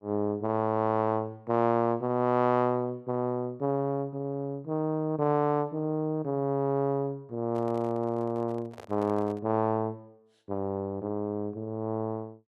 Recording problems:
microphone handling noise; from 7.5 to 9.5 s; peak -11 dB vs average level

